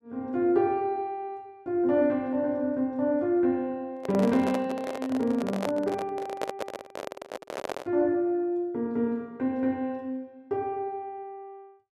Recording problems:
handling noise; from 4 to 8 s; peak +1 dB vs average level

